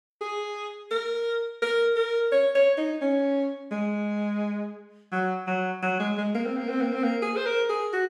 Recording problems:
none

